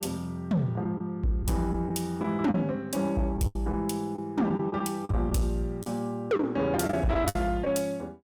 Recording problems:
distorted audio; soft clipping, signal-to-distortion ratio 12 dB
lost packets; 7% of the sound replaced, filled with the last packet

